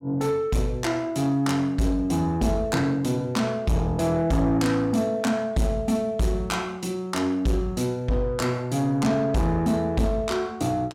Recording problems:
distorted audio; soft clipping, signal-to-distortion ratio 11 dB

